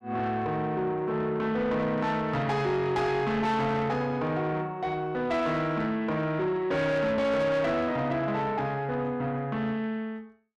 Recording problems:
distorted audio; soft clipping, signal-to-distortion ratio 10 dB

